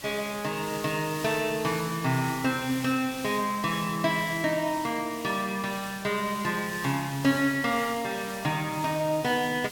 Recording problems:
hiss; slope -1 dB per octave, SNR 12 dB

